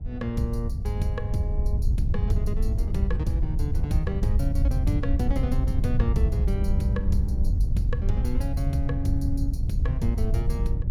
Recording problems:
wind on the microphone; below 86 Hz, SNR -4 dB

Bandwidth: 18 kHz